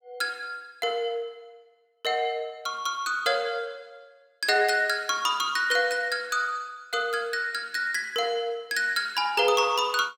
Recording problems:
none

